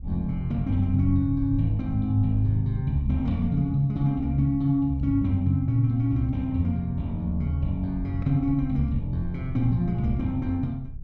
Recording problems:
low-frequency rumble; below 78 Hz, SNR 14 dB

